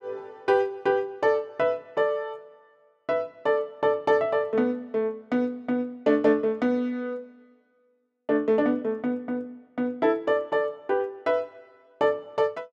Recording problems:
none

